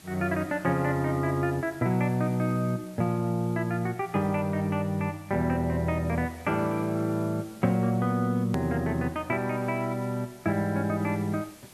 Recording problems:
hiss; slope -2 dB per octave, SNR 23 dB
edit click; at 8.5 s

